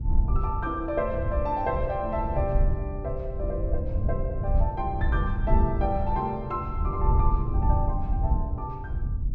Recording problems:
wind on the microphone; below 84 Hz, SNR -2 dB

